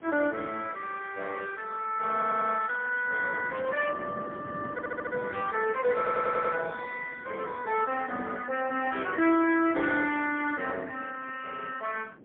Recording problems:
phone line; 240 Hz to 3.4 kHz, AMR-NB, then MP3
wind noise; below 430 Hz, SNR 17 dB
crackling; from 2 to 4 s; loose cable, SNR 27 dB
audio stuttering; at 2 s, at 4.5 s and at 6 s

